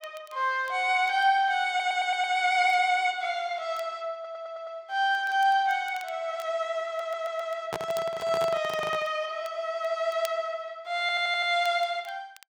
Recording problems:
crackling; vinyl, SNR 25 dB
stutter; 4 times, first at 1.5 s
handling noise; from 7.5 to 9 s; peak -1 dB vs average level

